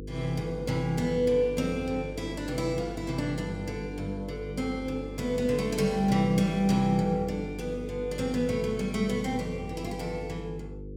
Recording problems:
electrical hum; 50 Hz, harmonics up to 500 Hz, SNR 11 dB

